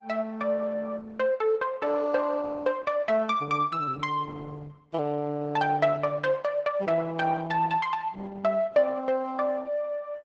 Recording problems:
codec artefacts; Opus, log-spectral distance 3 dB, nothing above 8 kHz

